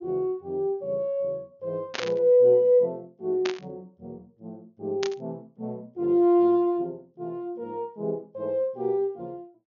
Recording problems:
low-pass filter; nothing above 6.7 kHz
static burst; at 2 s, at 3.5 s and at 5 s; peak -1 dB vs average level

